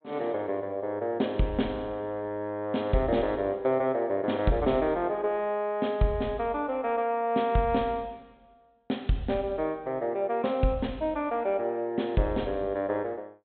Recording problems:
treble cut off; nothing above 4 kHz

